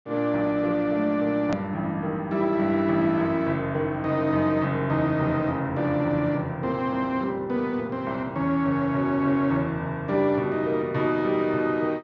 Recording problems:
low-pass filter; nothing above 7.4 kHz
edit click; at 1.5 s

